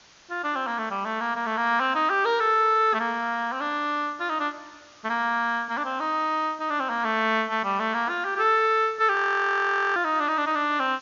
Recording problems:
treble missing; nothing above 6.9 kHz
background hiss; slope 0 dB per octave, SNR 27 dB
frozen audio; at 9 s for 1 s

